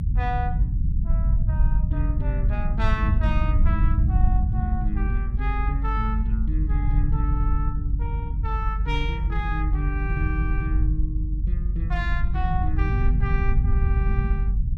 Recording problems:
rumble; below 74 Hz, strongest tone 48 Hz, SNR -7 dB

